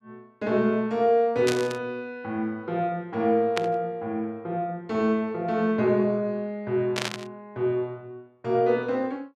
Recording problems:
static burst; at 1.5 s, at 3.5 s and at 7 s; peak +1 dB vs average level

